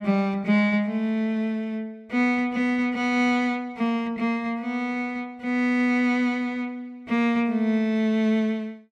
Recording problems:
none

